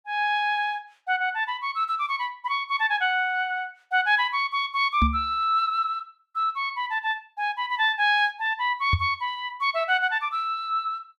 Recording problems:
microphone thump; at 5 s and at 9 s; peak +4 dB vs average level

